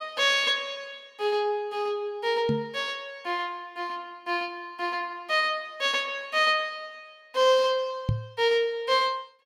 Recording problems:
microphone bump; at 2.5 s and at 8 s; peak +3 dB vs average level

